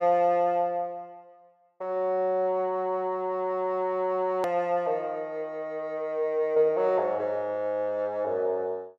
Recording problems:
click at an edit; at 4.5 s

